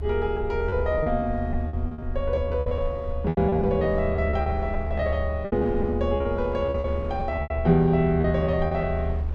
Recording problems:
low-frequency rumble; below 76 Hz, strongest tone 74 Hz, SNR 6 dB
wind on the microphone; below 690 Hz, SNR 19 dB
lost packets; 15% of the sound replaced, filled with repeated pitch periods

